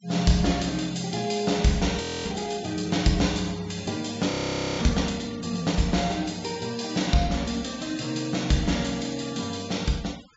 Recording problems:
low-pass filter; nothing above 8 kHz
noise reduction artefacts; signal-to-artefact ratio 18 dB
frozen audio; at 2 s and at 4.5 s

